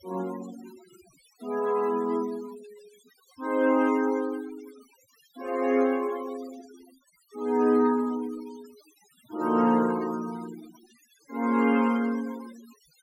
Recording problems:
denoising artefacts; signal-to-artefact ratio 21 dB

